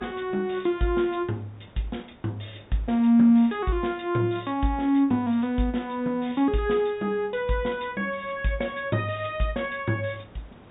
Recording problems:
treble cut off; nothing above 4 kHz
hiss; SNR 27 dB

